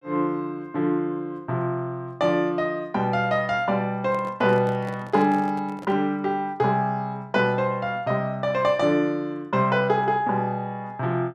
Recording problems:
microphone handling noise; from 4 to 6 s; peak -10 dB vs average level

